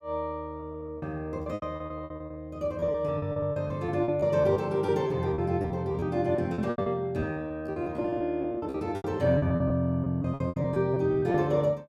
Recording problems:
lost packets; 17% of the sound replaced, filled with repeated pitch periods

